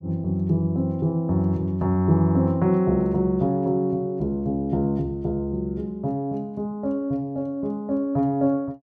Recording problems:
none

